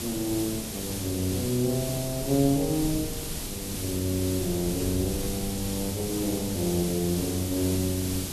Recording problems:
hiss; SNR 5 dB
rumble; below 120 Hz, SNR 14 dB

